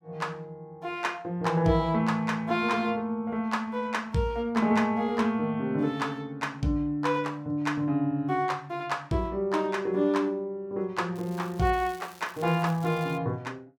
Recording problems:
crackling; from 11 to 13 s; loose cable, SNR 23 dB

